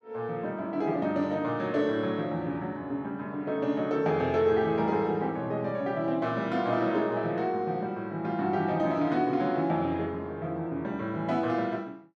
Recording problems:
none

